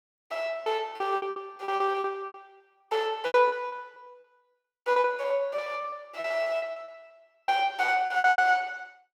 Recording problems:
lost packets; 21% of the sound replaced, filled with repeated pitch periods

